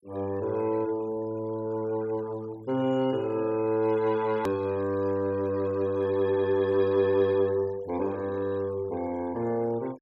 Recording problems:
denoising artefacts; signal-to-artefact ratio 23 dB
click at an edit; at 4.5 s

